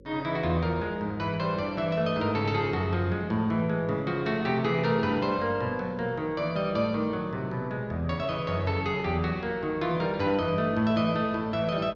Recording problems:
hum; 50 Hz, harmonics up to 550 Hz, SNR 25 dB

